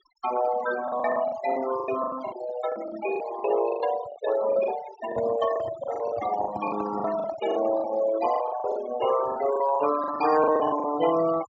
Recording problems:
treble cut off; nothing above 8 kHz
denoising artefacts; signal-to-artefact ratio 11 dB
packet loss; 15% of the sound replaced, filled with the last packet
microphone handling noise; from 5 to 8 s; peak -6 dB vs average level

